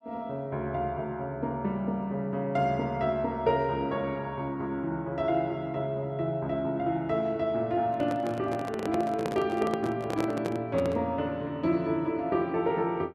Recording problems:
microphone handling noise; from 8 to 11 s; peak 0 dB vs average level

